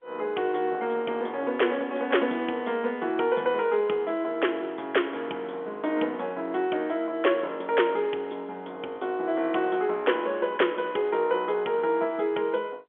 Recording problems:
telephone audio; 260 Hz to 3.4 kHz, G.711

